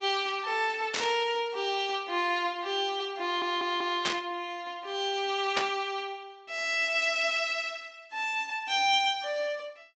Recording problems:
treble cut off; nothing above 8 kHz
lossy compression; Opus, log-spectral distance 3 dB
burst of static; at 1 s, at 4 s and at 5.5 s; peak +5 dB vs average level
stutter; at 3 s

